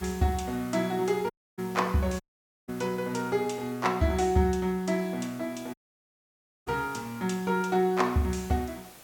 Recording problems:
hiss; slope -3 dB per octave, SNR 20 dB
audio cutting out; at 1.5 s, at 2 s and at 5.5 s for 1 s

